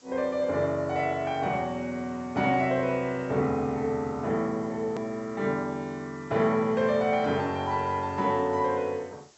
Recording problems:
treble missing; nothing above 7.8 kHz
background hiss; SNR 29 dB
edit click; at 5 s

